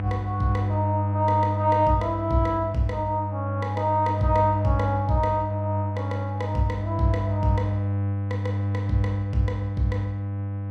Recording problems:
hum; 50 Hz, harmonics up to 1 kHz, SNR 2 dB

